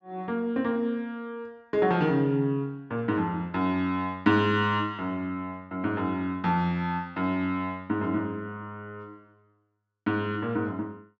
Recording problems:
low-pass filter; nothing above 8 kHz

